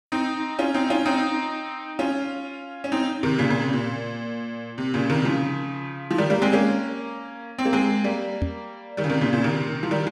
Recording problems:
knock on the microphone; at 8.5 s; peak +2 dB vs average level

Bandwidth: 12.5 kHz